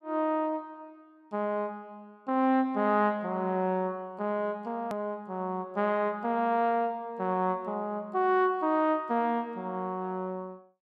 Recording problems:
click at an edit; at 5 s

